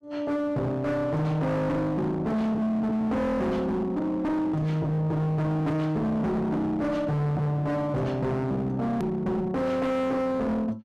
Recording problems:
distorted audio; hard clipping, signal-to-distortion ratio 7 dB
edit click; at 9 s

